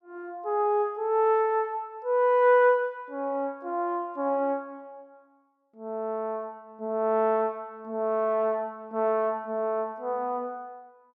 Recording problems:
none

